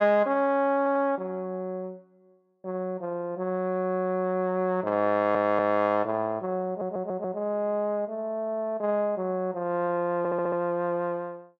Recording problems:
audio stuttering; 4 times, first at 1 s

